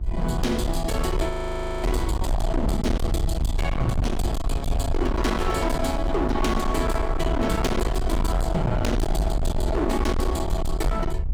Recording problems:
distorted audio; hard clipping, signal-to-distortion ratio 7 dB
hum; 50 Hz, harmonics up to 550 Hz, SNR 16 dB
low-frequency rumble; below 82 Hz, SNR 2 dB
wind on the microphone; below 510 Hz, SNR 19 dB
frozen audio; at 1.5 s for 0.5 s

